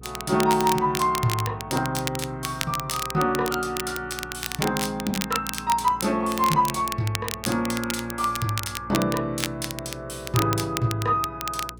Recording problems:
hum; 60 Hz, harmonics up to 480 Hz, SNR 19 dB
crackling; vinyl, SNR 7 dB

